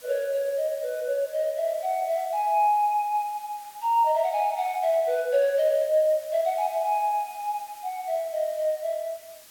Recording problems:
background hiss; slope +1 dB per octave, SNR 22 dB

